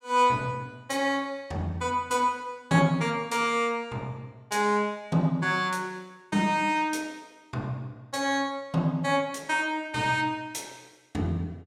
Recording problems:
none

